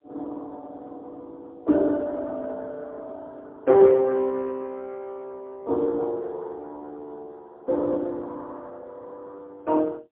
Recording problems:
phone line; 260 Hz to 2 kHz, AMR-NB, then MP3

